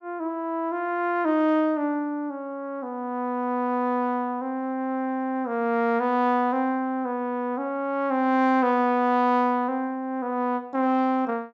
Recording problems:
none

